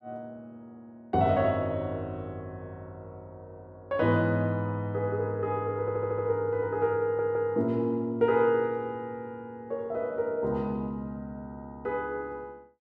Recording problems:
audio stuttering; at 6 s and at 7 s

